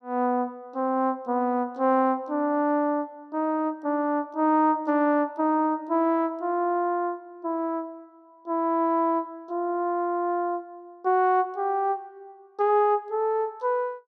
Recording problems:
none

